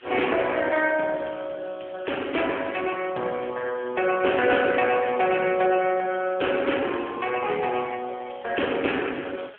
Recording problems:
phone line; 280 Hz to 3.3 kHz, AMR-NB
background hiss; SNR 27 dB

